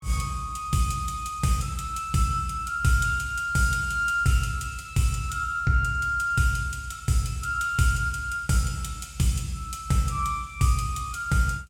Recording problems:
none

